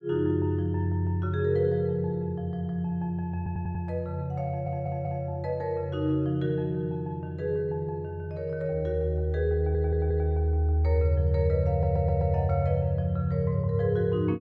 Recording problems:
stutter; 4 times, first at 3.5 s

